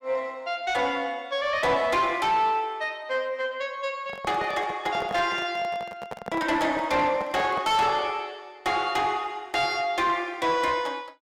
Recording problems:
distorted audio; soft clipping, signal-to-distortion ratio 10 dB
microphone handling noise; from 4 to 8 s; peak -3 dB vs average level

